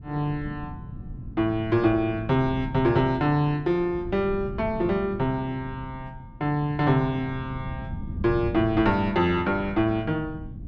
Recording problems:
wind on the microphone; below 180 Hz, SNR 13 dB

